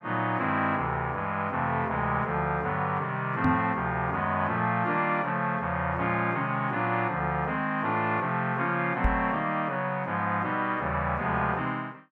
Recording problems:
knock on the microphone; at 3.5 s and at 9 s; peak +4 dB vs average level

